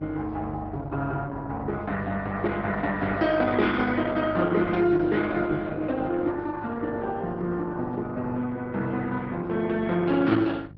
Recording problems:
low-pass filter; nothing above 5.2 kHz
lossy codec; Opus, log-spectral distance 3 dB
hum; 50 Hz, harmonics up to 400 Hz, SNR 13 dB

